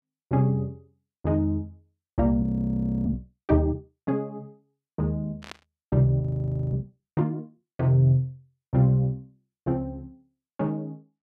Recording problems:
frozen audio; at 2.5 s for 0.5 s and at 6 s for 0.5 s
static burst; at 5.5 s; peak -9 dB vs average level

